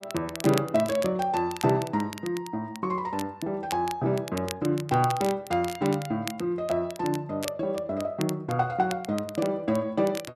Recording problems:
crackling; vinyl, SNR 14 dB

